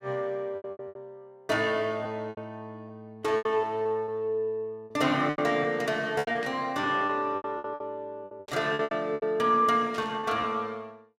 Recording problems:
lost packets; 13% of the sound replaced, filled with repeated pitch periods
burst of static; at 6.5 s, at 8.5 s and at 10 s; peak -9 dB vs average level

